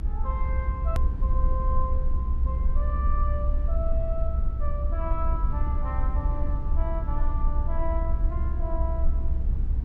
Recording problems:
rumble; below 64 Hz, SNR -9 dB
click at an edit; at 1 s

